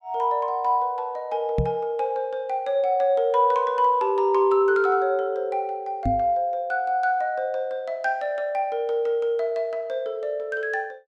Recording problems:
microphone bump; at 1.5 s and at 6 s; peak +3 dB vs average level

